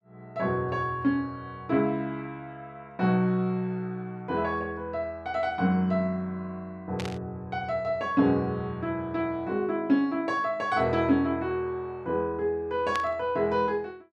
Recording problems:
static burst; at 7 s and at 13 s; peak -2 dB vs average level

